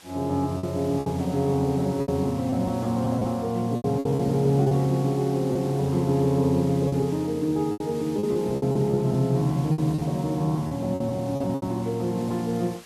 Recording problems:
background hiss; slope -1 dB per octave, SNR 21 dB
packet loss; 10% of the sound replaced, filled with repeated pitch periods

